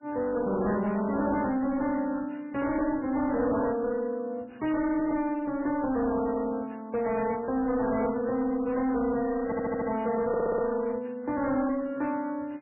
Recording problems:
lossy codec; MP3, log-spectral distance 3 dB, nothing above 2.8 kHz
distortion; hard clipping, uneven, signal-to-distortion ratio 10 dB
stutter; at 9.5 s and at 10 s

